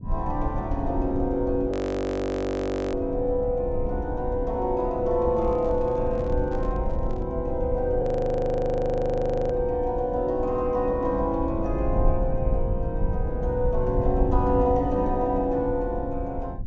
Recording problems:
treble missing; nothing above 8 kHz
rumble; below 94 Hz, SNR 6 dB
audio freezing; at 1.5 s for 1 s and at 8 s for 1.5 s
handling noise; from 5.5 to 7.5 s; peak -10 dB vs average level

